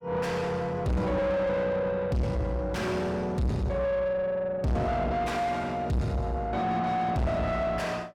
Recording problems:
distorted audio; soft clipping, signal-to-distortion ratio 6 dB

